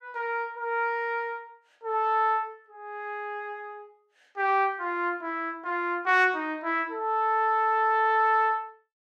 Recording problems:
none

